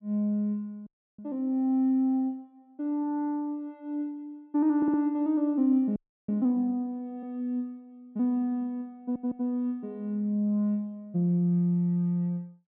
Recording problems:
treble missing; nothing above 4 kHz
audio freezing; at 1 s and at 6 s
stutter; at 5 s and at 9 s

